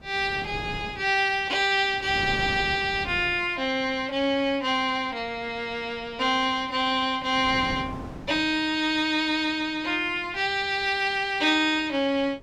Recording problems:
wind noise; below 430 Hz, SNR 18 dB

